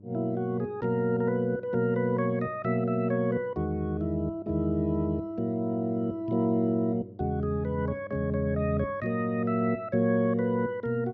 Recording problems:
hum; 50 Hz, harmonics up to 700 Hz, SNR 23 dB

